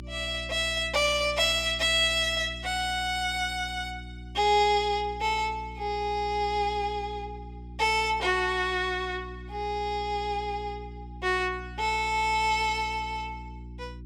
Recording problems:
hum; 60 Hz, harmonics up to 360 Hz, SNR 15 dB

